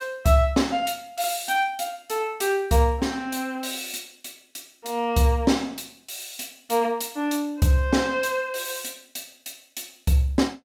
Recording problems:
none

